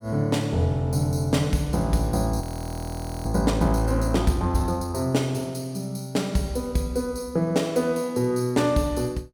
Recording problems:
frozen audio; at 2.5 s for 1 s

